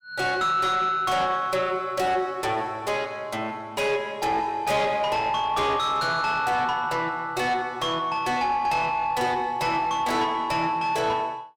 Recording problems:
distorted audio; soft clipping, signal-to-distortion ratio 10 dB

